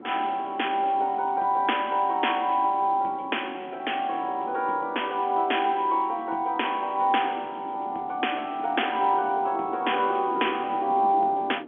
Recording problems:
phone line; 260 Hz to 3.4 kHz, G.711
wind noise; below 430 Hz, SNR 18 dB

